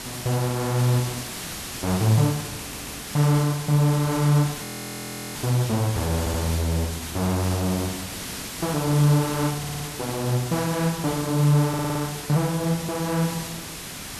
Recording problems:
hiss; slope -1 dB per octave, SNR 9 dB
stutter; 4 times, first at 2.5 s
frozen audio; at 4.5 s for 0.5 s

